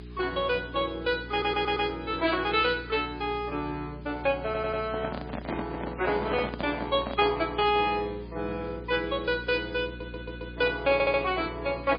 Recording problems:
lossy compression; MP3, log-spectral distance 6 dB
hum; 60 Hz, harmonics up to 420 Hz, SNR 14 dB
background hiss; SNR 28 dB
stutter; 4 times, first at 1.5 s
handling noise; from 5 to 7 s; peak -1 dB vs average level

